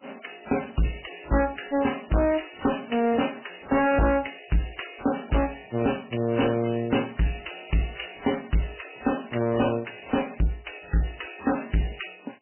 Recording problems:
lossy codec; MP3, then MP3, log-spectral distance 10 dB, nothing above 3 kHz
distorted audio; hard clipping, signal-to-distortion ratio 6 dB

